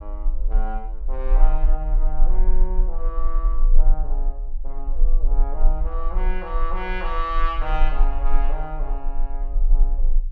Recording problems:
low-frequency rumble; below 32 Hz, strongest tone 18 Hz, SNR -7 dB

